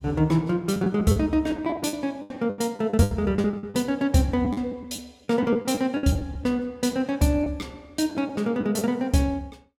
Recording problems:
lost packets; 12% of the sound replaced, filled with the last packet

